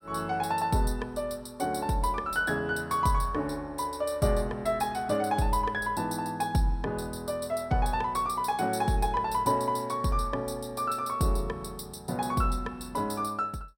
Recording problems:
none

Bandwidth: 16 kHz